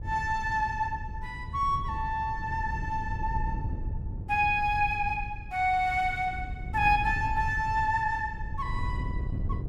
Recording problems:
wind noise; below 110 Hz, SNR 8 dB

